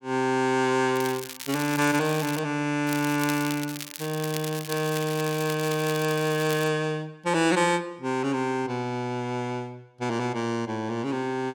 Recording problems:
crackling; from 1 to 2.5 s and from 3 to 6.5 s; loose cable, SNR 10 dB

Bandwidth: 17 kHz